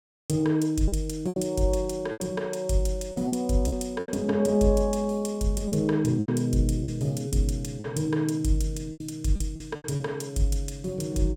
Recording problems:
packet loss; 8% of the sound replaced, filled with repeated pitch periods

